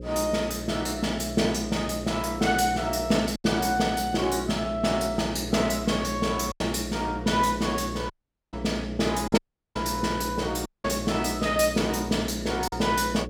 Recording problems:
electrical hum; 60 Hz, harmonics up to 540 Hz, SNR 11 dB
lost packets; 1.8% of the sound replaced, filled with silence
audio cutting out; at 8 s, at 9.5 s and at 11 s

